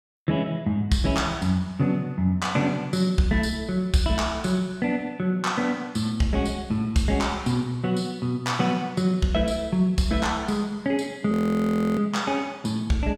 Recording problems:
frozen audio; at 11 s for 0.5 s

